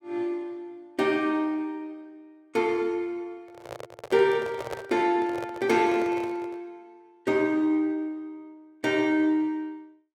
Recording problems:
microphone handling noise; from 3.5 to 6.5 s; peak -3 dB vs average level

